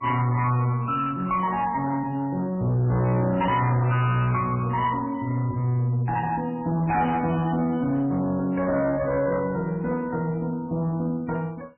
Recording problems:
codec artefacts; MP3, log-spectral distance 2 dB, nothing above 2.8 kHz
distorted audio; soft clipping, signal-to-distortion ratio 7 dB

